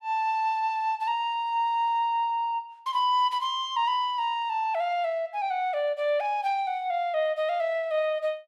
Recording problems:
none

